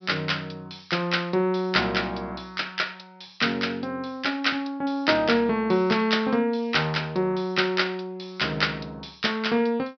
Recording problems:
low-pass filter; nothing above 5.5 kHz

